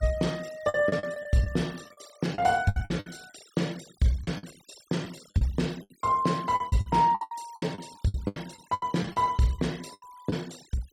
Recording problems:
noise reduction artefacts; signal-to-artefact ratio 21 dB
lost packets; 15% of the sound replaced, filled with the last packet

